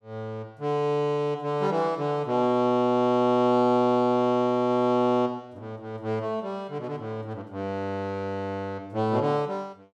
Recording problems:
none

